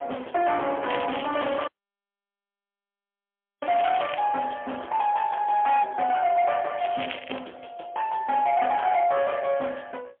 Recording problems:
phone line; 390 Hz to 3.3 kHz, AMR-NB, then MP3
distorted audio; hard clipping, signal-to-distortion ratio 11 dB
crackle; from 1 to 4 s and at 7 s; loose cable, SNR 13 dB
audio cutting out; at 1.5 s for 2 s

